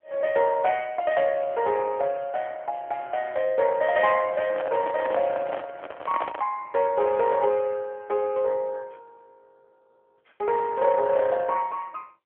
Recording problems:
phone line; 170 Hz to 3.1 kHz, AMR-NB
microphone handling noise; from 4.5 to 6.5 s; peak -1 dB vs average level

